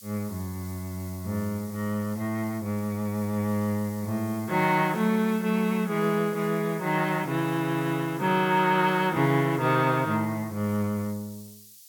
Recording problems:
background hiss; SNR 20 dB

